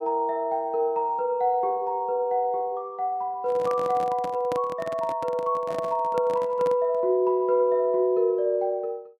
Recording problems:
microphone handling noise; from 3.5 to 7 s; peak -5 dB vs average level

